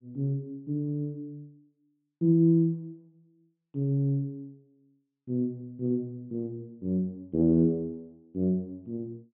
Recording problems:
treble missing; nothing above 4 kHz

